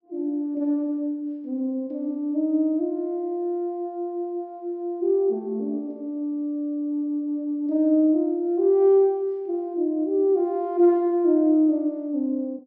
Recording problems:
none

